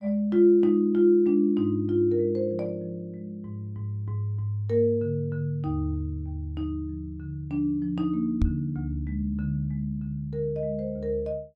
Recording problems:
microphone bump; at 8.5 s; peak +4 dB vs average level

